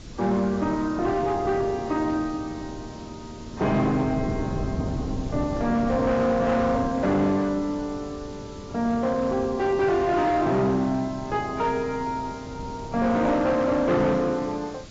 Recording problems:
lossy compression; AAC, log-spectral distance 4 dB, nothing above 7.3 kHz
distortion; hard clipping, signal-to-distortion ratio 11 dB
hiss; slope +1 dB per octave, SNR 23 dB
wind on the microphone; below 280 Hz, SNR 13 dB

